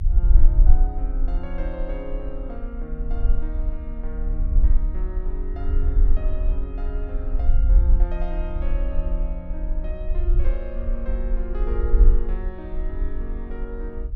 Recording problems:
rumble; below 46 Hz, SNR -11 dB

